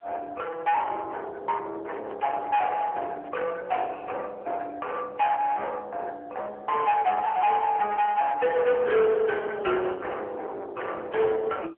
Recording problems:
phone line; 320 Hz to 3.1 kHz, AMR-NB
distorted audio; soft clipping, signal-to-distortion ratio 8 dB
handling noise; from 2 to 3.5 s; peak -7 dB vs average level

